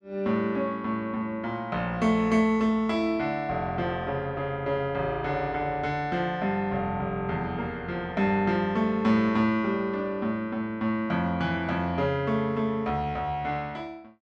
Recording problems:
none

